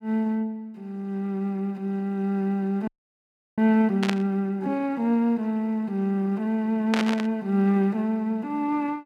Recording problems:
frozen audio; at 3 s for 0.5 s
static burst; at 4 s and at 7 s; peak +2 dB vs average level

